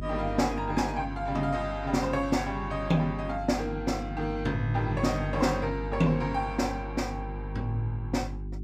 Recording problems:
mains hum; 50 Hz, harmonics up to 400 Hz, SNR 8 dB

